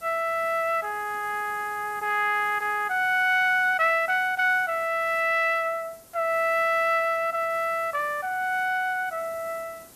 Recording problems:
hiss; SNR 23 dB

